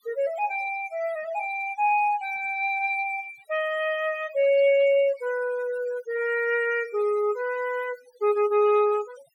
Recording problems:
noise reduction artefacts; signal-to-artefact ratio 21 dB

